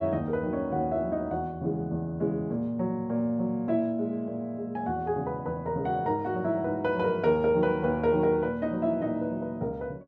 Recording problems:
none

